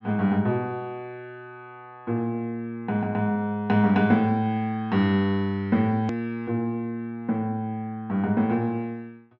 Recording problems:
treble cut off; nothing above 8 kHz
edit click; at 6 s

